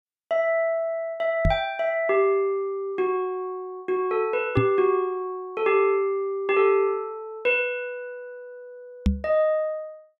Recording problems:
knock on the microphone; at 1.5 s, at 4.5 s and at 9 s; peak +6 dB vs average level

